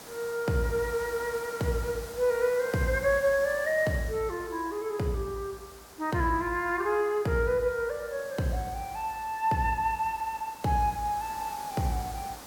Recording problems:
background hiss; SNR 16 dB

